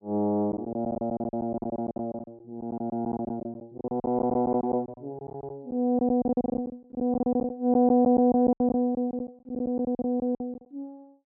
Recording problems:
packet loss; 17% of the sound replaced, filled with silence

